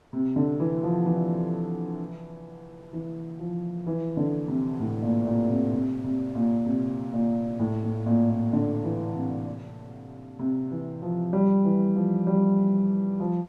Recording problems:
wind on the microphone; below 1 kHz, SNR 27 dB

